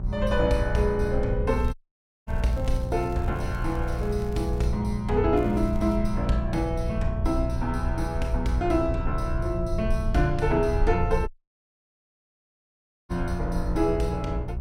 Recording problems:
mains hum; 60 Hz, harmonics up to 780 Hz, SNR 6 dB
rumble; below 66 Hz, SNR 6 dB
crackling; from 1.5 to 4.5 s and at 5.5 s; loose cable, SNR 26 dB
dropout; at 1.5 s for 0.5 s and at 11 s for 2 s

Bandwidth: 16.5 kHz